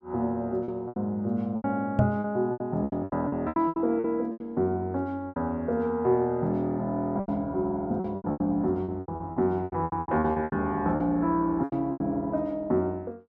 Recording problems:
lost packets; 15% of the sound replaced, filled with repeated pitch periods
knock on the microphone; at 2 s; peak +6 dB vs average level

